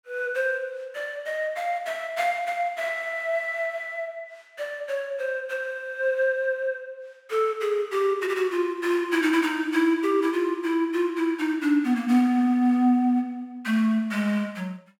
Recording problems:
none

